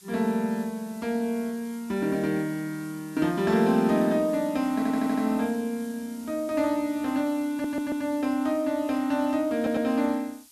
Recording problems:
background hiss; SNR 22 dB
stutter; at 5 s, at 7.5 s and at 9.5 s

